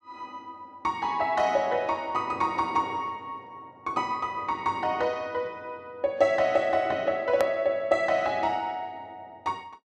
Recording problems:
hard cut with a click; at 7.5 s

